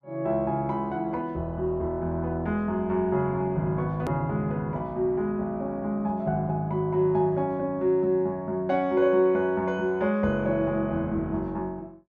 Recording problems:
click at an edit; at 4 s

